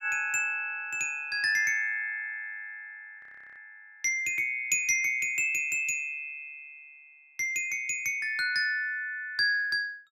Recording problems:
audio freezing; at 3 s

